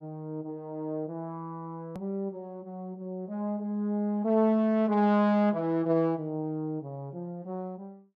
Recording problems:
edit click; at 2 s

